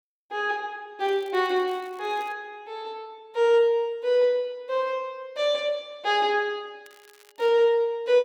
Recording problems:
crackling; from 1 to 2.5 s and at 7 s; loose cable, SNR 29 dB

